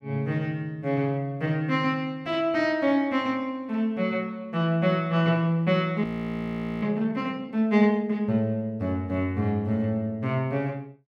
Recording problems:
frozen audio; at 6 s for 1 s

